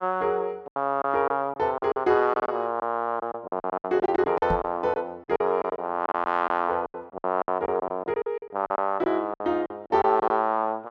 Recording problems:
packet loss; 14% of the sound replaced, filled with silence
microphone thump; at 4.5 s; peak -1 dB vs average level

